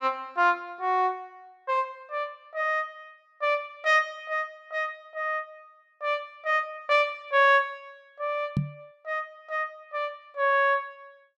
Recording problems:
knock on the microphone; at 8.5 s; peak +4 dB vs average level

